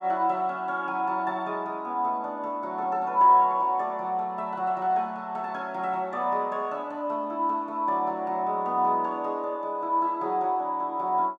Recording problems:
none

